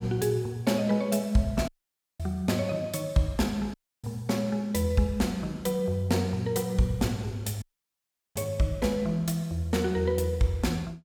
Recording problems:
dropout; at 1.5 s for 0.5 s, at 3.5 s and at 7.5 s for 0.5 s

